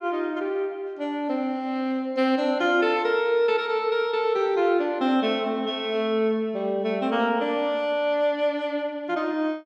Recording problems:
none

